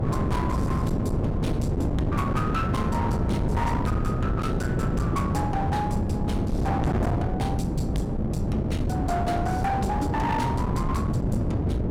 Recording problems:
distortion; hard clipping, signal-to-distortion ratio 7 dB
wind on the microphone; below 310 Hz, SNR -3 dB

